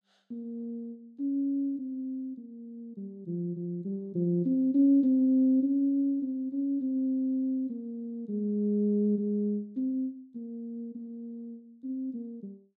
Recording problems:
none

